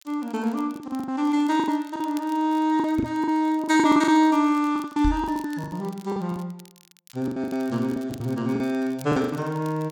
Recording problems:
crackling; vinyl, SNR 27 dB
packet loss; 15% of the sound replaced, filled with the last packet
knock on the microphone; at 3 s and at 5 s; peak 0 dB vs average level

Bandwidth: 17 kHz